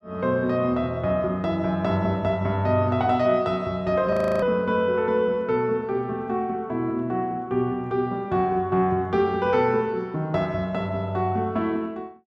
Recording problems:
audio freezing; at 4 s

